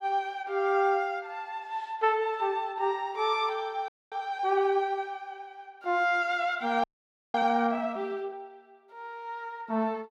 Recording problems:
audio freezing; at 4 s and at 7 s for 0.5 s

